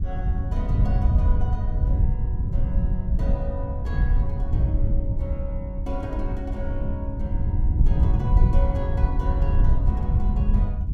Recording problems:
wind on the microphone; below 88 Hz, SNR -11 dB

